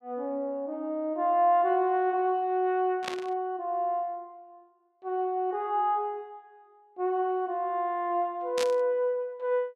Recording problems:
static burst; at 3 s and at 8.5 s; peak -1 dB vs average level

